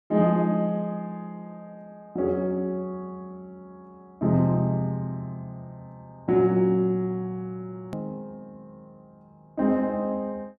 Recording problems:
click at an edit; at 8 s

